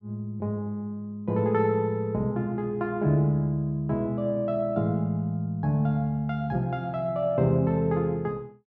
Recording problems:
none

